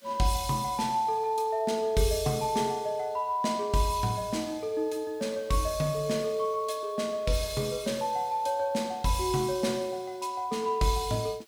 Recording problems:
background hiss; slope 0 dB per octave, SNR 29 dB

